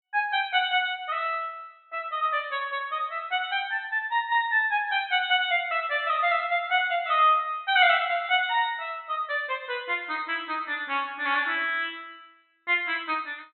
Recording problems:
low-pass filter; nothing above 4 kHz

